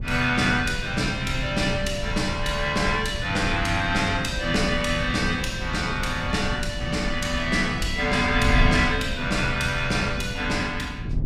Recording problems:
wind on the microphone; below 150 Hz, SNR 8 dB

